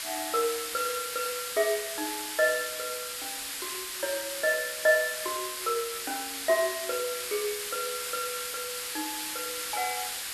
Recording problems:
hiss; SNR 2 dB

